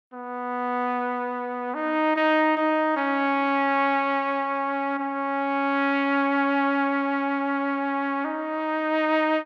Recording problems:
none

